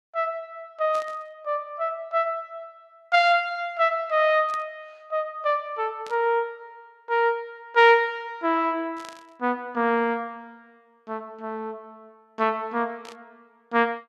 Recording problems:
static burst; 5 times, first at 1 s; peak -14 dB vs average level

